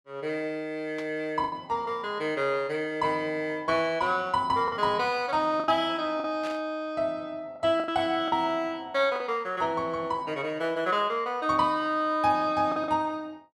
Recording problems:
lost packets; 4% of the sound replaced, filled with the last packet
static burst; at 1 s and at 6.5 s; peak -9 dB vs average level

